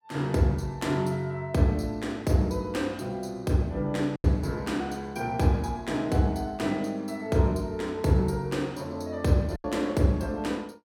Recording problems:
packet loss; 1.5% of the sound replaced, filled with silence

